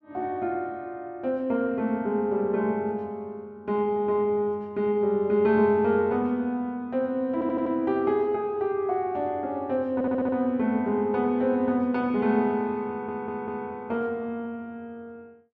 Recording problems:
audio stuttering; at 7.5 s, at 10 s and at 13 s

